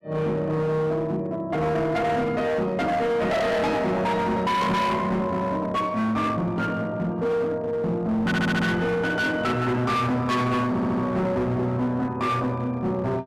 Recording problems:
distortion; hard clipping, uneven, signal-to-distortion ratio 7 dB
audio stuttering; at 8.5 s and at 11 s

